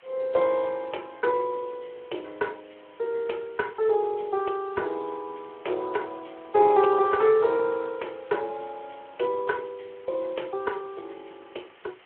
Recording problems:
phone line; 320 Hz to 3.3 kHz, Speex
background hiss; SNR 27 dB

